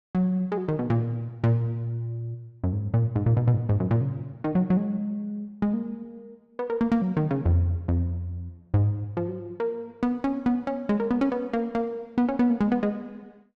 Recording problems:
none

